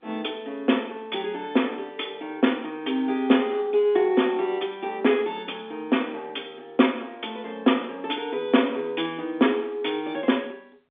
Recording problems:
telephone audio; 240 Hz to 3.6 kHz, G.711

